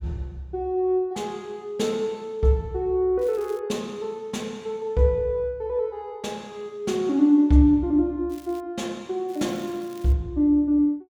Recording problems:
crackling; at 3 s, at 8.5 s and at 9.5 s; loose cable, SNR 27 dB

